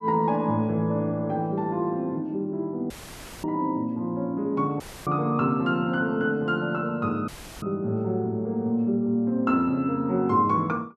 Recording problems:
dropout; at 3 s for 0.5 s, at 5 s and at 7.5 s; filled with static

